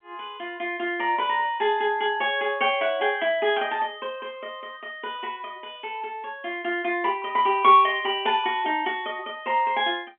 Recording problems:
phone line; 240 Hz to 3.3 kHz, G.711

